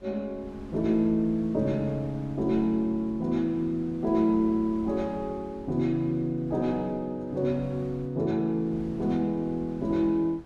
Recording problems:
wind on the microphone; below 240 Hz, SNR 20 dB

